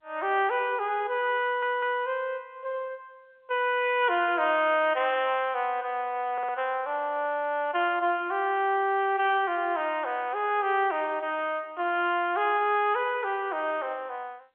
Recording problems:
telephone audio; 320 Hz to 3.4 kHz, G.711
audio stuttering; at 1.5 s and at 6.5 s

